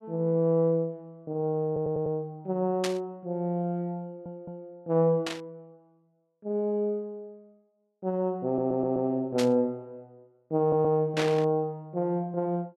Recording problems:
stutter; 4 times, first at 1.5 s
burst of static; 4 times, first at 3 s; peak 0 dB vs average level

